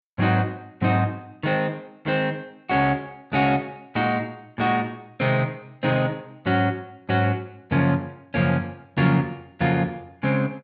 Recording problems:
treble cut off; nothing above 8 kHz

